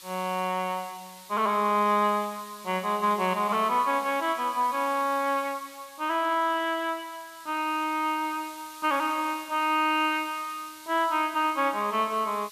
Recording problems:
hiss; slope +4 dB per octave, SNR 19 dB

